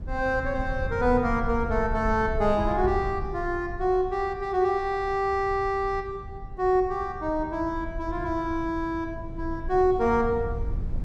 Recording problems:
rumble; below 94 Hz, SNR 10 dB

